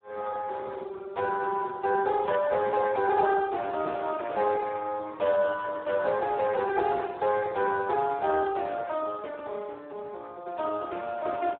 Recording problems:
phone line; 340 Hz to 2.1 kHz, Speex

